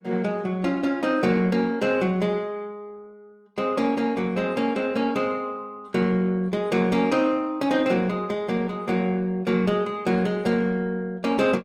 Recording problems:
lossy compression; Opus, log-spectral distance 2 dB, nothing above 19 kHz

